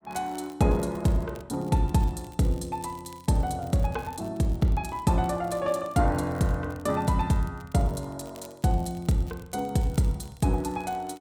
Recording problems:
crackle; vinyl, SNR 26 dB

